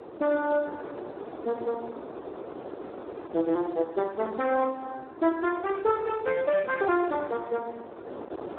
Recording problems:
telephone audio; 300 Hz to 2.6 kHz, Speex
wind noise; below 700 Hz, SNR 13 dB

